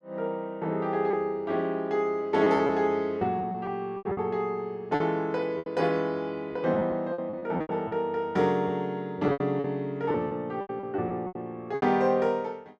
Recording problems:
packet loss; 10% of the sound replaced, filled with repeated pitch periods

